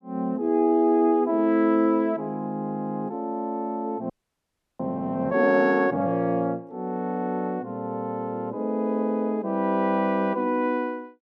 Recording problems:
audio freezing; at 4 s for 0.5 s

